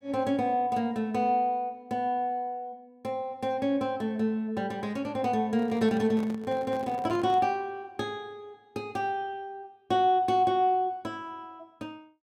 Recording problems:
microphone handling noise; from 5.5 to 7.5 s; peak -9 dB vs average level

